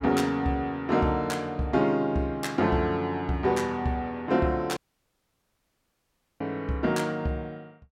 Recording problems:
audio cutting out; at 5 s for 1.5 s

